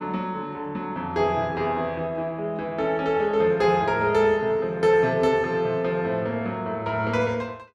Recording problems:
none

